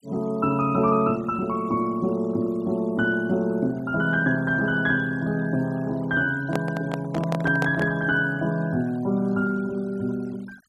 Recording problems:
denoising artefacts; signal-to-artefact ratio 24 dB
microphone handling noise; from 6.5 to 8 s; peak -1 dB vs average level

